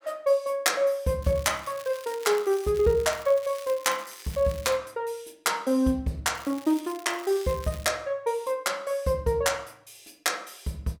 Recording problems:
crackling; from 1 to 5 s and from 6.5 to 8 s; loose cable, SNR 19 dB

